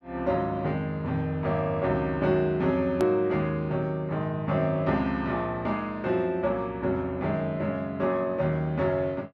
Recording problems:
click at an edit; at 3 s

